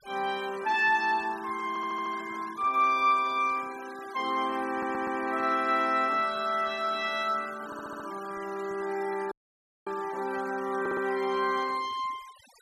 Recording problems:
denoising artefacts; signal-to-artefact ratio 19 dB
stutter; 4 times, first at 1.5 s
dropout; at 9.5 s for 0.5 s

